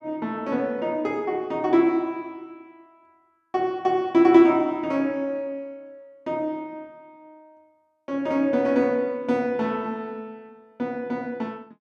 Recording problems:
none

